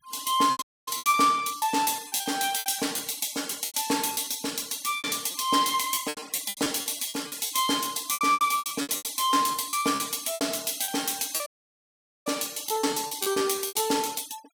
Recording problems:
noise reduction artefacts; signal-to-artefact ratio 20 dB
packet loss; 17% of the sound replaced, filled with repeated pitch periods
audio cutting out; at 0.5 s and at 11 s for 1 s

